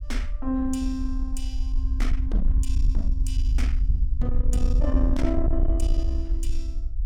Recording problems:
distorted audio; soft clipping, signal-to-distortion ratio 12 dB
rumble; below 58 Hz, SNR -4 dB

